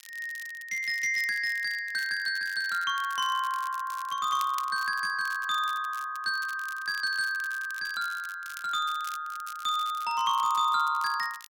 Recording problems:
crackling; vinyl, SNR 18 dB

